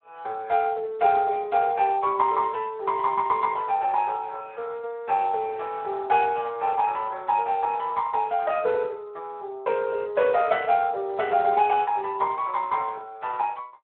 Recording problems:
telephone audio; 340 Hz to 3.6 kHz, Speex

